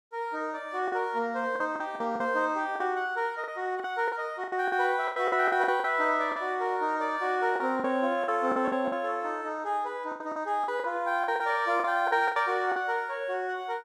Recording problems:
packet loss; 11% of the sound replaced, filled with the last packet

